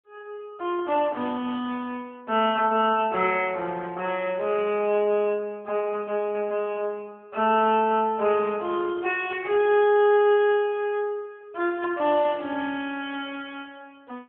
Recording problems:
telephone audio; 220 Hz to 3.3 kHz, AMR-NB

